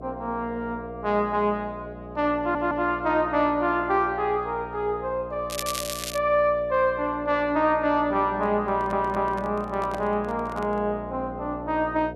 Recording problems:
hum; 60 Hz, harmonics up to 720 Hz, SNR 14 dB
audio stuttering; at 2.5 s and at 8.5 s
crackle; at 5.5 s; loose cable, SNR 7 dB
microphone handling noise; from 8.5 to 11 s; peak -6 dB vs average level

